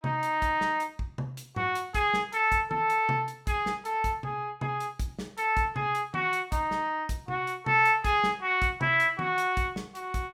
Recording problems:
none

